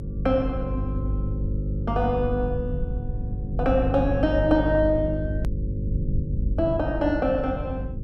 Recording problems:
hum; 50 Hz, harmonics up to 550 Hz, SNR 5 dB
rumble; below 120 Hz, SNR 8 dB
click at an edit; at 5.5 s

